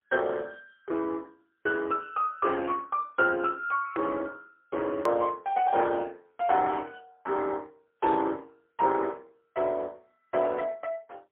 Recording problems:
telephone audio; 300 Hz to 3.2 kHz, AMR-NB, then MP3
hard cut with a click; at 5 s

